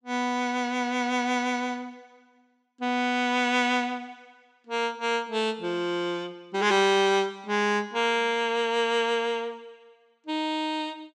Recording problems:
none

